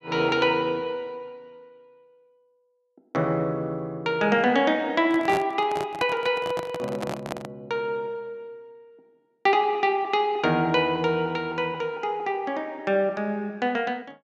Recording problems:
handling noise; from 5 to 7.5 s; peak -1 dB vs average level

